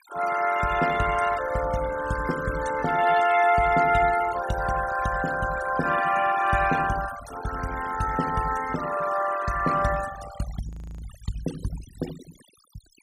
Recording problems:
denoising artefacts; signal-to-artefact ratio 13 dB
audio freezing; at 11 s

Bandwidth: 15.5 kHz